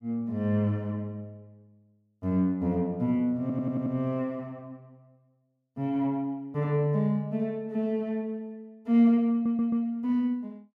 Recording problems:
stutter; at 3.5 s and at 9.5 s

